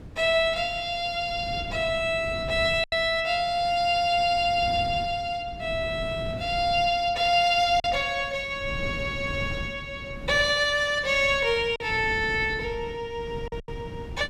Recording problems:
wind on the microphone; below 220 Hz, SNR 15 dB
packet loss; 2% of the sound replaced, filled with silence

